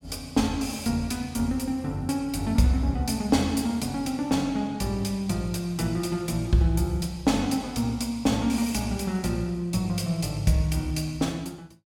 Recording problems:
none

